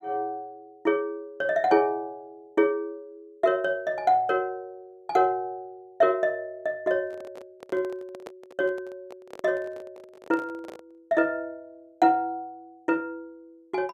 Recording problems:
microphone handling noise; from 7 to 11 s; peak -9 dB vs average level

